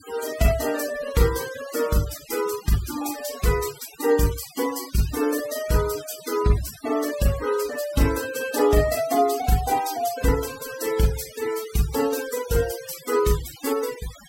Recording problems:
denoising artefacts; signal-to-artefact ratio 13 dB

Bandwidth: 16 kHz